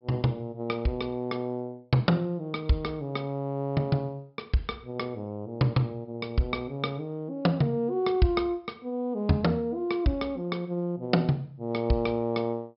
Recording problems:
treble cut off; nothing above 5.3 kHz

